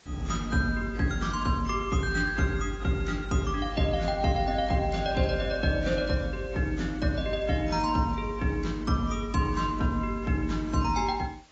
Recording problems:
lossy codec; AAC, log-spectral distance 3 dB, nothing above 6.9 kHz
background hiss; slope -2 dB per octave, SNR 27 dB

